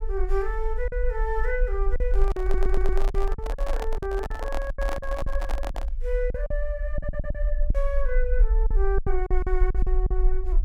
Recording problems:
rumble; below 44 Hz, strongest tone 18 Hz, SNR -3 dB
packet loss; 10% of the sound replaced, filled with silence
microphone handling noise; from 2 to 6 s; peak +2 dB vs average level
stutter; at 2.5 s and at 7 s

